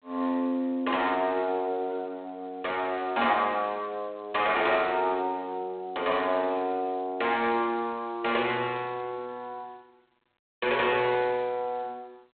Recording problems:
telephone audio; 300 Hz to 3.7 kHz, G.726

